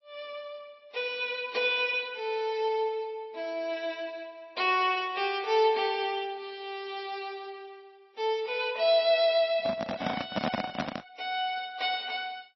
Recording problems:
codec artefacts; AAC, then MP3, log-spectral distance 3 dB, nothing above 5.5 kHz
handling noise; from 9.5 to 11 s; peak +3 dB vs average level

